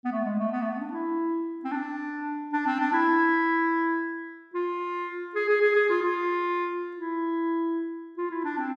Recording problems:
none

